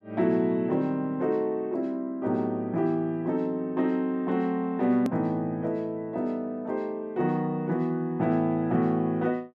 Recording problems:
edit click; at 5 s

